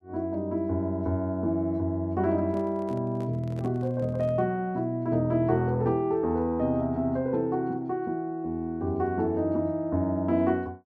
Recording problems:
handling noise; from 2.5 to 4.5 s; peak -10 dB vs average level

